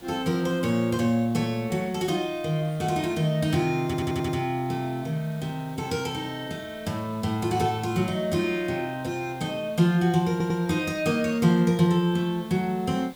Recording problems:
hiss; SNR 23 dB
stutter; at 4 s and at 10 s

